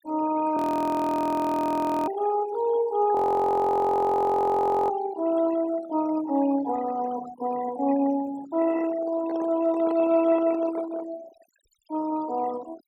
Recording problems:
noise reduction artefacts; signal-to-artefact ratio 17 dB
frozen audio; at 0.5 s for 1.5 s and at 3 s for 1.5 s
handling noise; from 8.5 to 11 s; peak -8 dB vs average level

